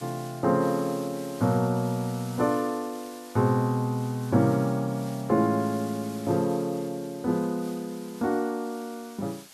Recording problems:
background hiss; slope +1 dB per octave, SNR 19 dB

